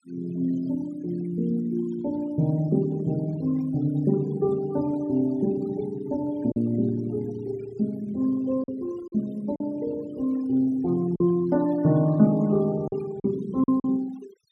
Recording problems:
denoising artefacts; signal-to-artefact ratio 23 dB
packet loss; 3% of the sound replaced, filled with silence

